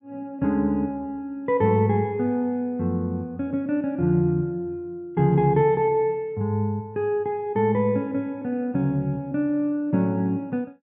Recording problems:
none

